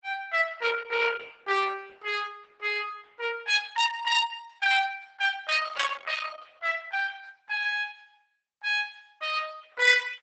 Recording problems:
lossy compression; Opus, log-spectral distance 5 dB, nothing above 8 kHz

